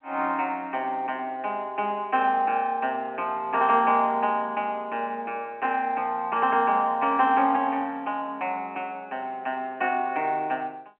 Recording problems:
telephone audio; 220 Hz to 3.1 kHz, G.711

